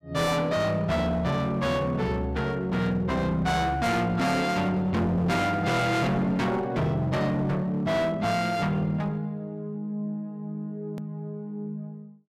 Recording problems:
distortion; hard clipping, uneven, signal-to-distortion ratio 7 dB
edit click; at 11 s

